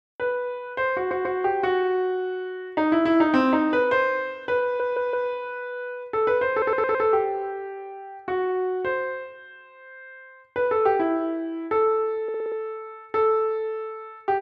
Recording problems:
stutter; 4 times, first at 1 s

